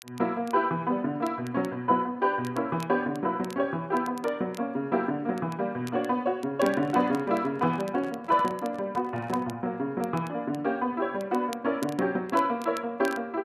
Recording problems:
crackling; vinyl, SNR 22 dB
handling noise; from 6.5 to 9.5 s; peak -9 dB vs average level

